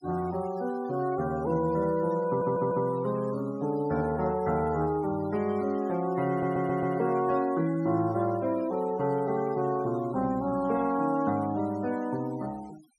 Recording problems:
denoising artefacts; signal-to-artefact ratio 21 dB
stutter; at 2.5 s and at 6.5 s

